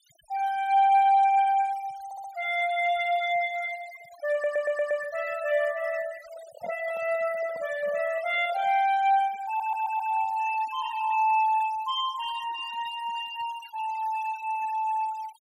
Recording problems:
denoising artefacts; signal-to-artefact ratio 19 dB
audio stuttering; at 2 s, at 4.5 s and at 9.5 s
handling noise; from 6 to 9 s; peak -12 dB vs average level

